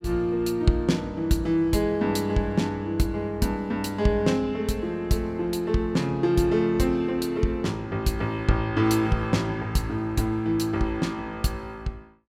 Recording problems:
none

